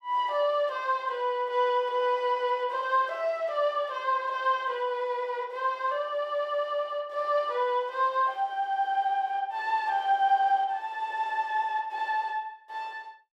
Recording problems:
none

